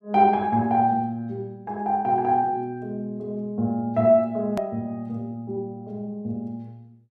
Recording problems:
edit click; at 4.5 s

